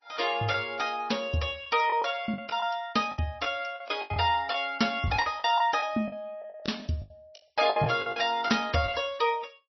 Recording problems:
codec artefacts; MP3, log-spectral distance 4 dB, nothing above 5.7 kHz
lost packets; 12% of the sound replaced, filled with the last packet

